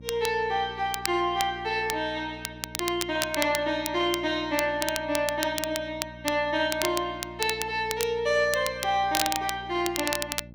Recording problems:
hum; 60 Hz, harmonics up to 600 Hz, SNR 18 dB
crackle; vinyl, SNR 7 dB

